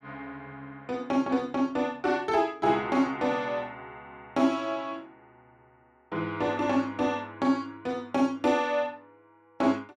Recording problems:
none

